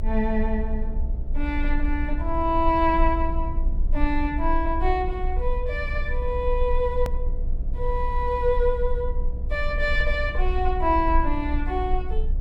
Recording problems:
electrical hum; 60 Hz, harmonics up to 720 Hz, SNR 22 dB
low-frequency rumble; below 60 Hz, strongest tone 24 Hz, SNR 3 dB
edit click; at 7 s

